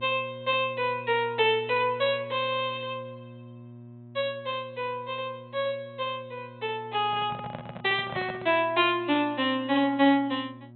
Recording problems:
treble cut off; nothing above 3.8 kHz
hum; 60 Hz, harmonics up to 960 Hz, SNR 19 dB
handling noise; from 7 to 8.5 s; peak -6 dB vs average level

